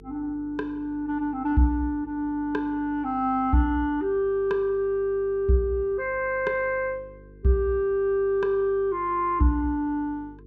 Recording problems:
hum; 50 Hz, harmonics up to 450 Hz, SNR 23 dB

